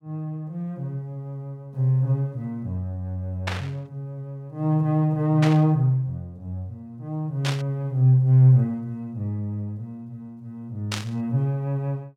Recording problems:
static burst; 4 times, first at 3.5 s; peak -1 dB vs average level

